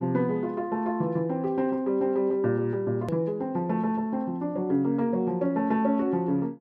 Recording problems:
edit click; at 3 s

